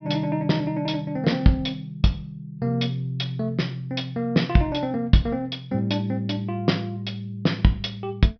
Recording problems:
low-pass filter; nothing above 5.5 kHz

